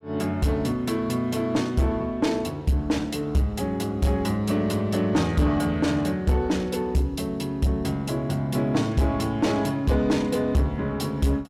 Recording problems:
distortion; soft clipping, signal-to-distortion ratio 10 dB

